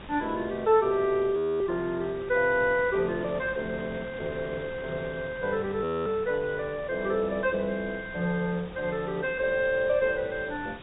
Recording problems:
treble cut off; nothing above 4 kHz
background hiss; SNR 25 dB
wind on the microphone; below 1.2 kHz, SNR 17 dB
audio freezing; at 1.5 s and at 6 s

